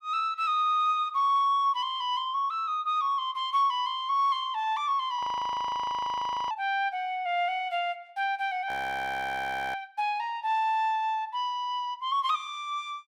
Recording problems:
frozen audio; at 5 s for 1.5 s and at 8.5 s for 1 s

